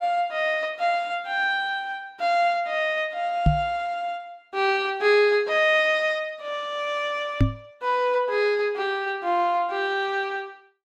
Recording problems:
microphone thump; at 3.5 s and at 7.5 s; peak +8 dB vs average level

